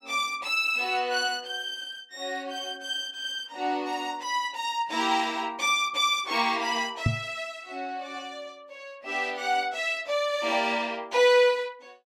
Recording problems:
microphone thump; at 7 s; peak +6 dB vs average level

